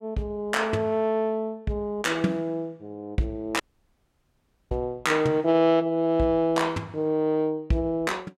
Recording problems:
audio cutting out; at 3.5 s for 1 s

